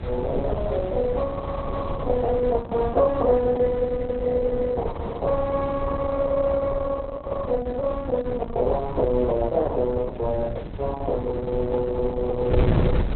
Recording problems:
codec artefacts; Opus, log-spectral distance 3 dB, nothing above 3.9 kHz
wind noise; below 200 Hz, SNR 8 dB

